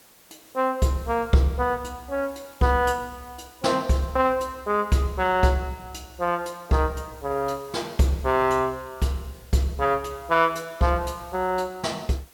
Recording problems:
hiss; slope -2 dB per octave, SNR 25 dB

